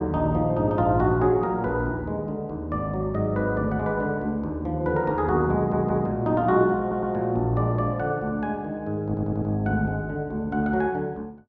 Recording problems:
audio stuttering; at 5.5 s, at 7 s and at 9 s

